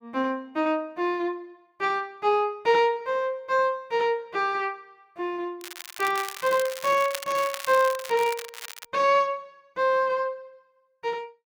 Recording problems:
crackling; from 5.5 to 9 s; loose cable, SNR 12 dB

